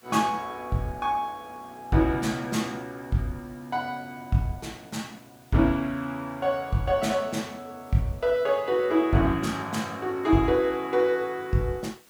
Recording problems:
hiss; slope -1 dB per octave, SNR 29 dB

